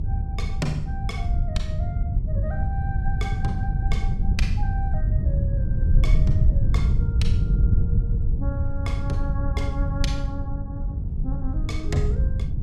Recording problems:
electrical hum; 50 Hz, harmonics up to 500 Hz, SNR 3 dB
wind on the microphone; below 96 Hz, SNR -10 dB

